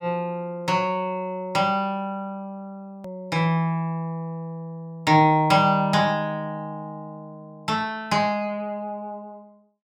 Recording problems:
hard cut with a click; at 3 s

